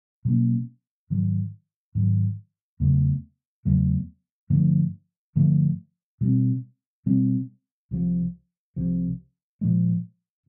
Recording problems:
none

